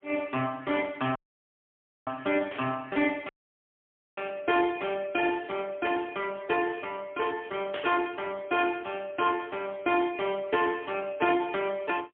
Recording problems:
phone line; 150 Hz to 3.3 kHz, AMR-NB, then MP3
audio cutting out; at 1 s for 1 s and at 3.5 s for 1 s
static burst; at 2.5 s, at 6 s and at 7.5 s; peak -4 dB vs average level

